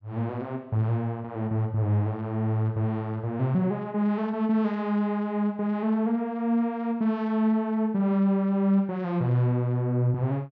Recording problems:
none

